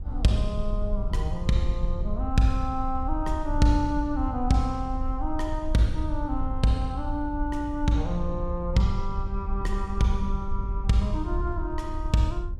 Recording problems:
wind noise; below 62 Hz, SNR 4 dB

